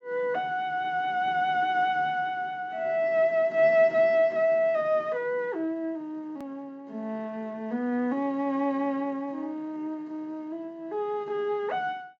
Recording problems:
low-pass filter; nothing above 8 kHz
click at an edit; at 6.5 s

